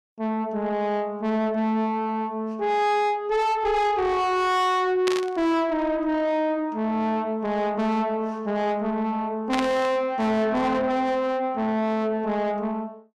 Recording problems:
distorted audio; soft clipping, signal-to-distortion ratio 7 dB
static burst; at 5 s and at 9.5 s; peak 0 dB vs average level

